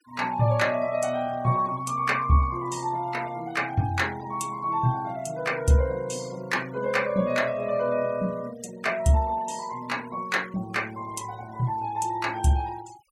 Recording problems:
denoising artefacts; signal-to-artefact ratio 23 dB

